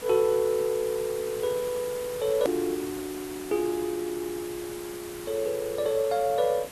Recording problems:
hiss; slope -3 dB per octave, SNR 12 dB
click at an edit; at 2.5 s

